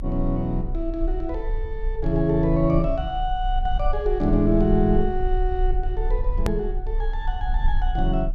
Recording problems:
rumble; below 42 Hz, strongest tone 30 Hz, SNR 4 dB
edit click; at 6.5 s

